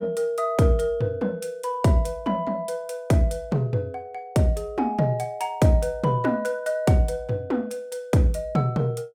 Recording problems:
none

